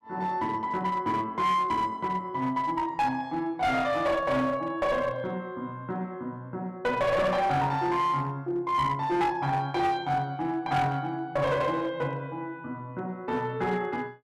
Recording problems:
distorted audio; hard clipping, uneven, signal-to-distortion ratio 10 dB

